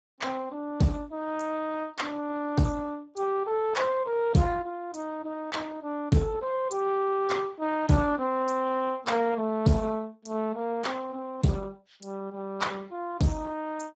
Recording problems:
codec artefacts; Speex, log-spectral distance 3 dB, nothing above 7.6 kHz

